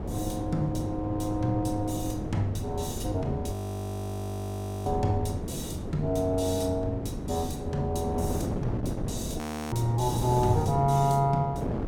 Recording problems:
wind noise; below 380 Hz, SNR 5 dB
audio freezing; at 3.5 s for 1.5 s and at 9.5 s

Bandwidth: 17 kHz